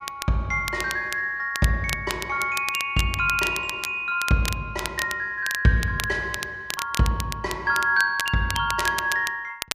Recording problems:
crackle; vinyl, SNR 9 dB

